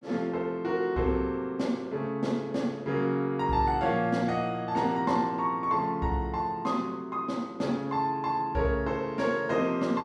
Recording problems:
none

